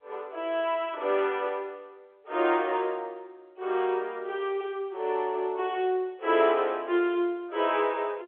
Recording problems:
telephone audio; 340 Hz to 3.5 kHz, G.711

